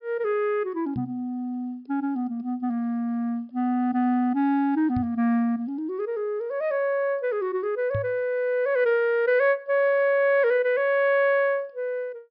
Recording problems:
treble missing; nothing above 5.5 kHz
knock on the microphone; at 1 s, at 5 s and at 8 s; peak -3 dB vs average level

